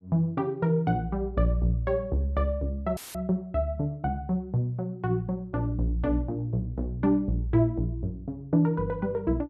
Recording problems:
audio cutting out; at 3 s; filled with static

